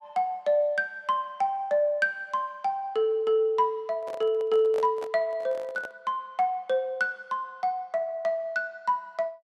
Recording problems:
handling noise; from 4 to 6 s; peak -5 dB vs average level

